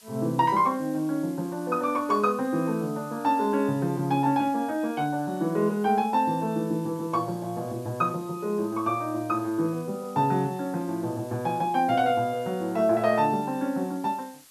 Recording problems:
background hiss; slope +1 dB per octave, SNR 24 dB

